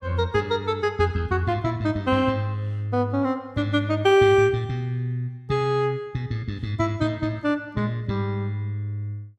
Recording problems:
none

